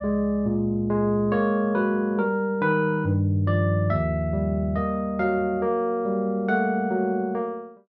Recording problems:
none

